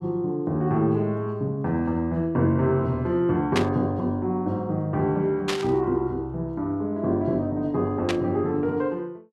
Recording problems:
burst of static; at 3.5 s, at 5.5 s and at 8 s; peak +3 dB vs average level

